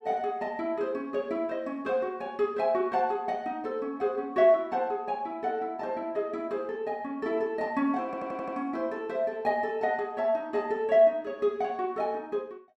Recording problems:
audio stuttering; at 8 s

